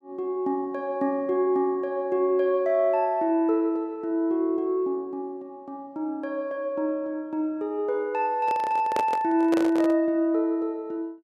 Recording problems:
microphone handling noise; from 8.5 to 10 s; peak 0 dB vs average level

